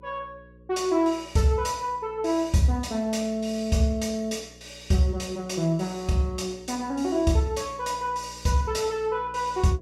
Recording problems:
hum; 60 Hz, harmonics up to 540 Hz, SNR 24 dB

